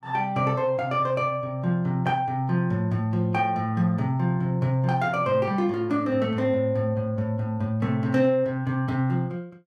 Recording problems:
none

